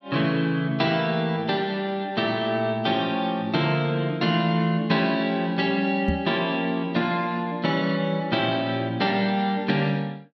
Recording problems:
microphone thump; at 6 s; peak +2 dB vs average level

